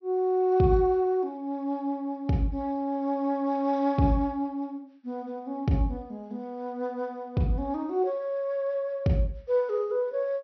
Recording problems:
low-pass filter; nothing above 5.9 kHz

